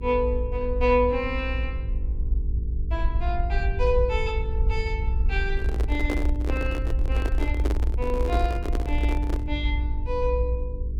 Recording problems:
hum; 50 Hz, harmonics up to 450 Hz, SNR 11 dB
rumble; below 60 Hz, SNR -1 dB
handling noise; from 5.5 to 9.5 s; peak +3 dB vs average level

